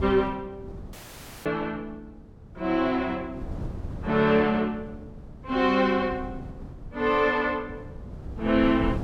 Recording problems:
wind on the microphone; below 200 Hz, SNR 15 dB
audio cutting out; at 1 s for 0.5 s

